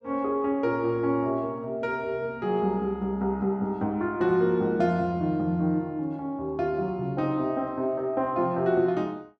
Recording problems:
none

